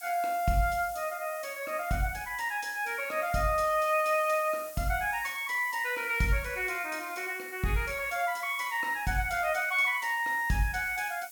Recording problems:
hiss; SNR 16 dB

